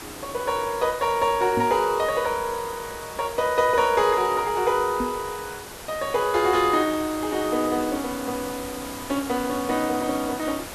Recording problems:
hiss; slope -3 dB per octave, SNR 13 dB
microphone bump; at 1.5 s and at 5 s; peak -1 dB vs average level

